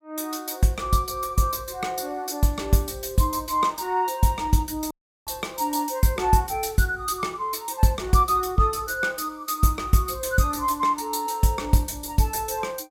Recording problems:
dropout; at 5 s

